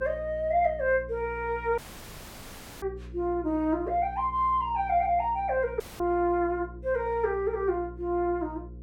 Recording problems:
hum; 60 Hz, harmonics up to 540 Hz, SNR 16 dB
audio cutting out; at 2 s for 1 s and at 6 s

